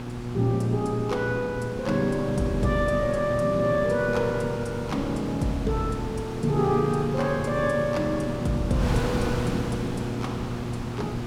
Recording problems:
mains hum; 60 Hz, harmonics up to 840 Hz, SNR 8 dB
wind on the microphone; below 810 Hz, SNR 8 dB

